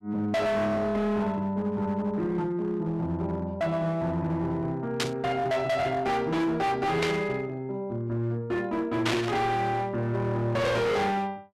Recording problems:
distortion; hard clipping, uneven, signal-to-distortion ratio 7 dB
static burst; at 5 s, at 7 s and at 9 s; peak +3 dB vs average level

